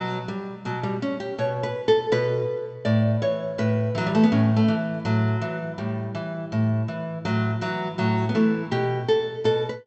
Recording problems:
treble cut off; nothing above 7.8 kHz

